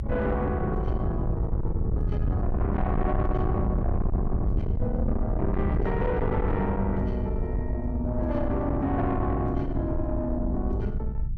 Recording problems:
distortion; soft clipping, signal-to-distortion ratio 8 dB
low-frequency rumble; below 110 Hz, SNR 1 dB

